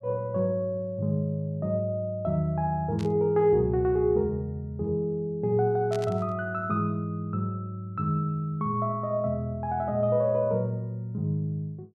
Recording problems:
burst of static; at 3 s and at 6 s; peak -10 dB vs average level

